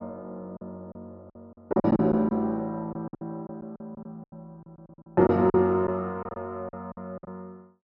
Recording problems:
lost packets; 13% of the sound replaced, filled with silence

